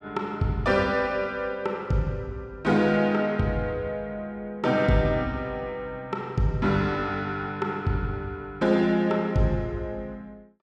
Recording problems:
none

